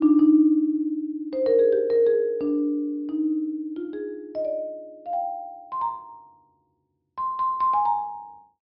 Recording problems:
treble cut off; nothing above 5.5 kHz

